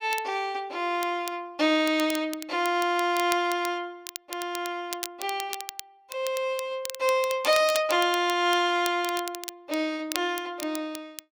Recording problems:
crackle; vinyl, SNR 12 dB

